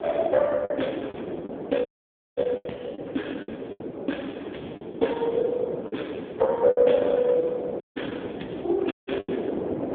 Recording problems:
phone line; 170 Hz to 3.5 kHz, AMR-NB
wind noise; below 530 Hz, SNR 8 dB
lost packets; 7% of the sound replaced, filled with the last packet
audio cutting out; at 2 s for 0.5 s, at 8 s and at 9 s

